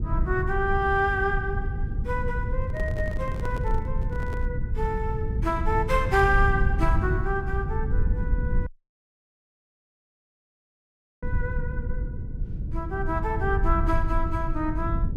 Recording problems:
electrical hum; 50 Hz, harmonics up to 500 Hz, SNR 22 dB
rumble; below 92 Hz, SNR 1 dB
handling noise; from 2.5 to 4.5 s; peak -6 dB vs average level
audio cutting out; at 8.5 s for 2.5 s

